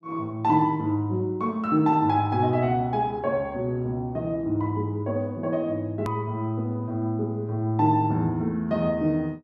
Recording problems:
edit click; at 6 s

